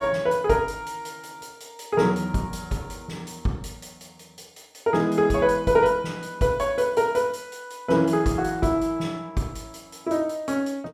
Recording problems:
none

